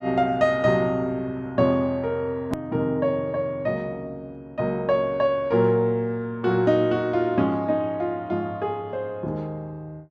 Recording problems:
edit click; at 2.5 s

